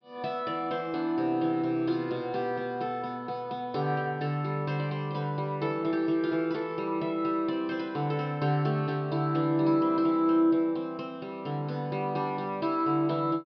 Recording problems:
treble missing; nothing above 5.5 kHz

